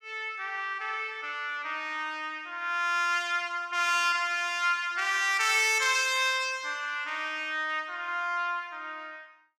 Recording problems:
none

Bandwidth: 15 kHz